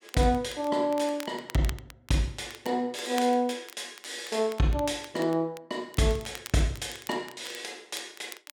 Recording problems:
crackling; vinyl, SNR 17 dB

